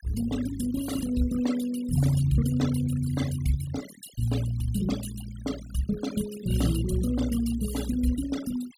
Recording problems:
denoising artefacts; signal-to-artefact ratio 13 dB

